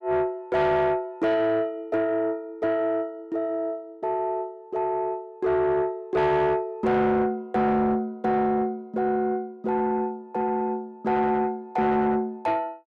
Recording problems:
distorted audio; soft clipping, signal-to-distortion ratio 11 dB

